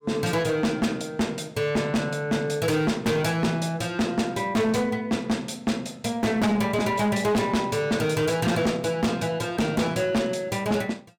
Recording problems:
distorted audio; hard clipping, signal-to-distortion ratio 7 dB

